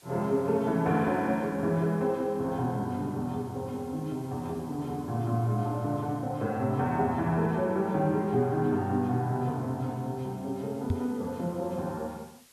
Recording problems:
background hiss; slope +1 dB per octave, SNR 27 dB
knock on the microphone; at 11 s; peak +3 dB vs average level

